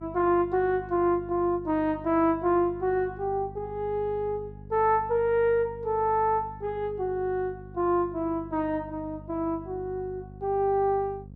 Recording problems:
mains hum; 50 Hz, harmonics up to 550 Hz, SNR 17 dB

